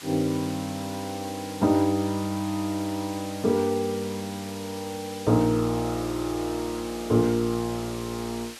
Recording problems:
background hiss; slope +1 dB per octave, SNR 13 dB

